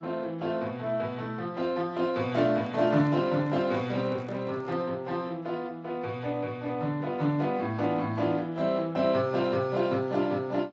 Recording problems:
lossy codec; AAC, then Speex, log-spectral distance 3 dB, nothing above 7.3 kHz
handling noise; from 2.5 to 5 s; peak -11 dB vs average level

